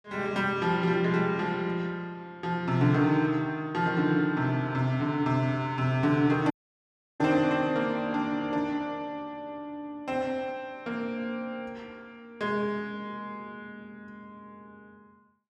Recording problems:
dropout; at 6.5 s for 0.5 s

